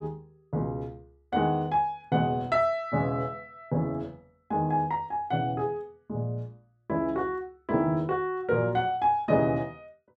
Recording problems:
none

